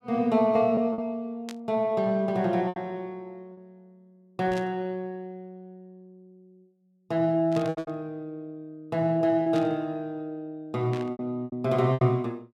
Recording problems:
lost packets; 6% of the sound replaced, filled with repeated pitch periods
burst of static; 5 times, first at 1.5 s; peak -10 dB vs average level

